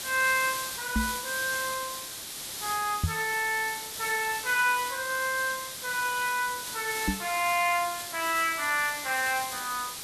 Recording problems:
hiss; slope +1 dB per octave, SNR 6 dB
microphone thump; at 1 s, at 3 s and at 7 s; peak +5 dB vs average level

